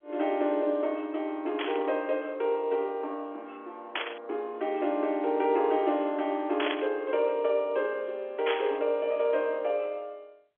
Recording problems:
phone line; 260 Hz to 3.6 kHz, G.711
burst of static; 4 times, first at 1.5 s; peak +2 dB vs average level

